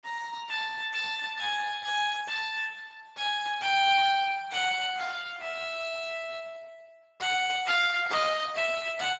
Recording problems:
lossy compression; Speex, log-spectral distance 6 dB, nothing above 7.3 kHz

